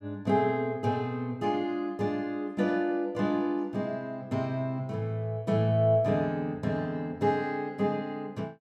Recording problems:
none

